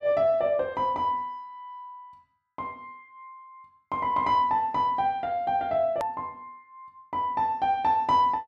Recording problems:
hard cut with a click; at 6 s

